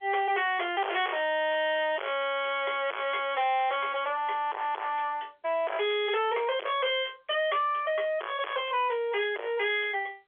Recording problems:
telephone audio; 370 Hz to 3.4 kHz, G.711
distorted audio; soft clipping, signal-to-distortion ratio 3 dB

